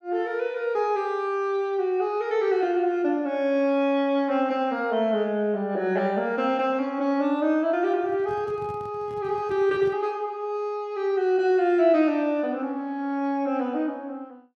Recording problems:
microphone handling noise; from 8 to 10 s; peak -13 dB vs average level

